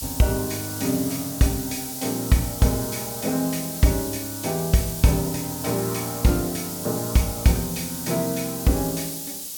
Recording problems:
background hiss; SNR 6 dB

